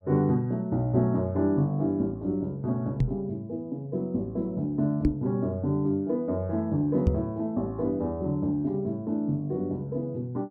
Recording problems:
microphone thump; at 3 s, at 5 s and at 7 s; peak +8 dB vs average level

